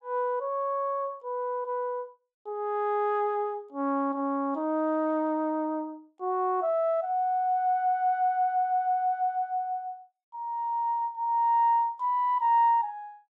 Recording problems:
none

